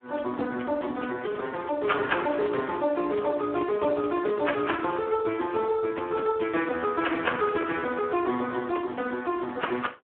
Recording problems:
phone line; 260 Hz to 3.5 kHz, Speex

